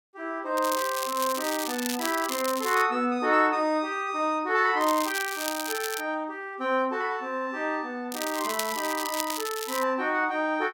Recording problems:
crackle; from 0.5 to 3 s, from 5 to 6 s and from 8 to 10 s; loose cable, SNR 7 dB

